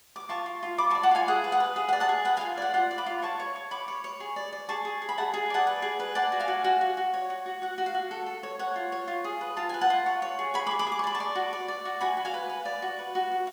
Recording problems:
hiss; slope 0 dB per octave, SNR 28 dB

